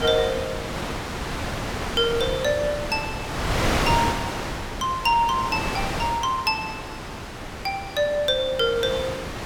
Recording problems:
wind on the microphone; below 2.1 kHz, SNR 5 dB

